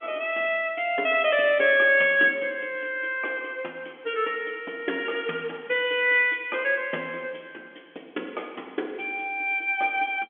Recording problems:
telephone audio; 260 Hz to 3.4 kHz, G.711

